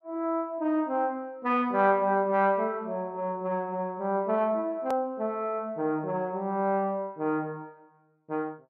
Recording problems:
hard cut with a click; at 5 s

